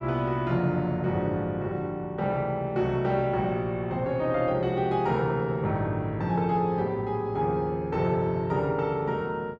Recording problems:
none

